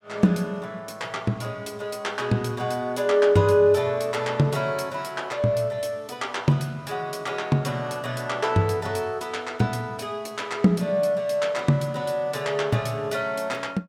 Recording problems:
none

